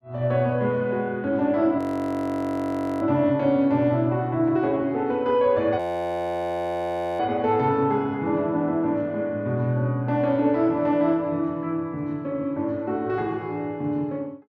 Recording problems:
audio freezing; at 2 s for 1 s and at 6 s for 1.5 s

